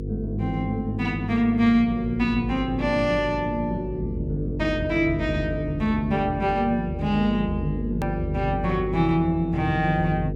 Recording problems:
electrical hum; 50 Hz, harmonics up to 500 Hz, SNR 9 dB
click at an edit; at 8 s

